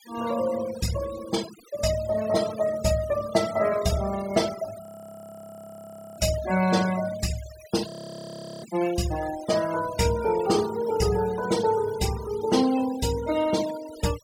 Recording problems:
noise reduction artefacts; signal-to-artefact ratio 14 dB
frozen audio; at 5 s for 1.5 s and at 8 s for 0.5 s

